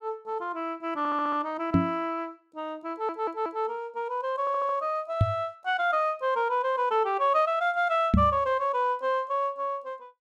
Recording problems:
audio stuttering; at 1 s, at 3 s and at 4.5 s
microphone bump; at 1.5 s, at 5 s and at 8 s; peak +8 dB vs average level

